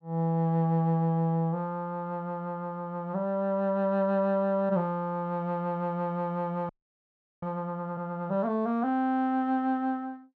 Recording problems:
frozen audio; at 6.5 s for 0.5 s

